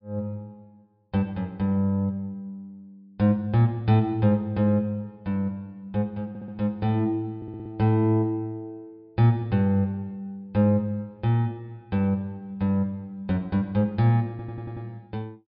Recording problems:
treble cut off; nothing above 5.5 kHz
stutter; at 6.5 s, at 7.5 s and at 14 s

